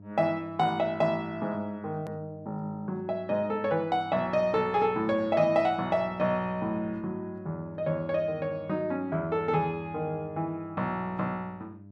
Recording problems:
mains hum; 50 Hz, harmonics up to 700 Hz, SNR 20 dB
hard cut with a click; at 2 s

